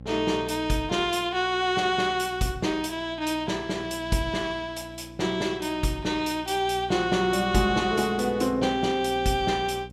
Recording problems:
hum; 60 Hz, harmonics up to 780 Hz, SNR 18 dB

